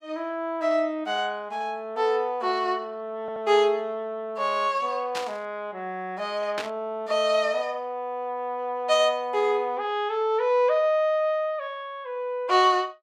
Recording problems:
audio stuttering; at 3 s
static burst; at 5 s and at 6.5 s; peak -3 dB vs average level

